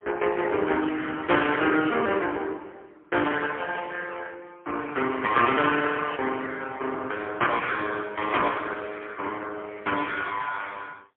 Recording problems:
telephone audio; 240 Hz to 3.3 kHz, AMR-NB, then MP3

